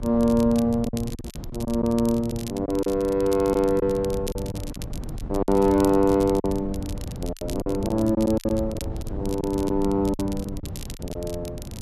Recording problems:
wind on the microphone; below 180 Hz, SNR 11 dB
crackling; vinyl, SNR 19 dB
lost packets; 9% of the sound replaced, filled with silence

